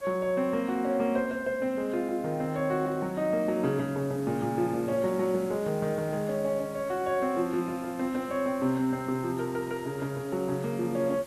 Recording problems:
background hiss; slope -3 dB per octave, SNR 21 dB

